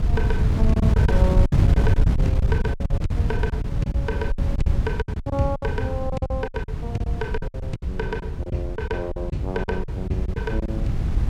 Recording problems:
wind on the microphone; below 120 Hz, SNR -5 dB
packet loss; 14% of the sound replaced, filled with silence

